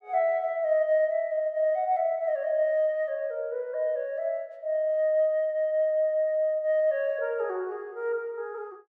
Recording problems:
none

